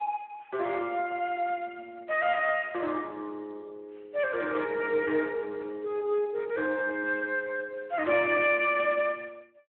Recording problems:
phone line; 320 Hz to 3.8 kHz, Speex

